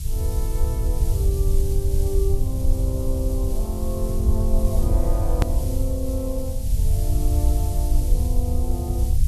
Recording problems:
hiss; SNR 8 dB
low-frequency rumble; below 76 Hz, SNR -8 dB
hard cut with a click; at 5.5 s

